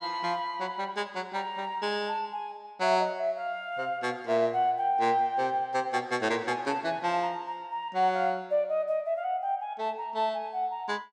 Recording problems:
none

